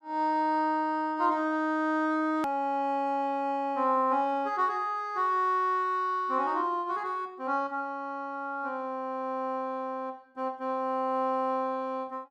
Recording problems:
hard cut with a click; at 2.5 s

